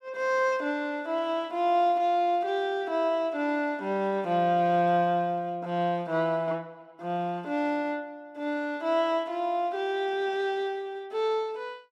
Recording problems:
none

